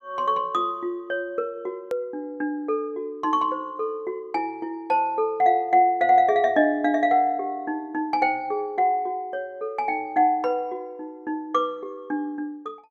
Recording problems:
hard cut with a click; at 2 s

